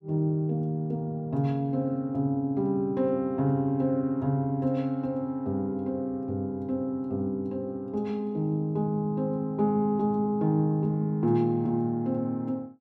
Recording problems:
none

